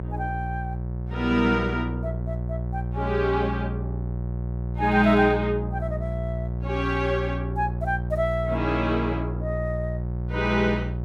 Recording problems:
hum; 60 Hz, harmonics up to 720 Hz, SNR 4 dB

